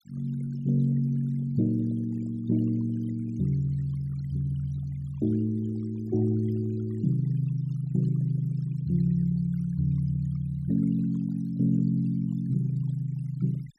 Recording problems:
denoising artefacts; signal-to-artefact ratio 24 dB

